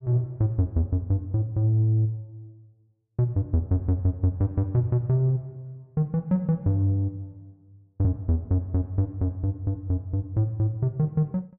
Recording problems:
none

